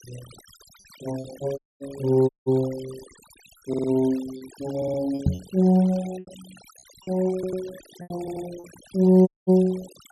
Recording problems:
denoising artefacts; signal-to-artefact ratio 22 dB
lost packets; 7% of the sound replaced, filled with repeated pitch periods
audio cutting out; at 1.5 s, at 2.5 s and at 9.5 s
stutter; 4 times, first at 3.5 s
knock on the microphone; at 5.5 s; peak +5 dB vs average level

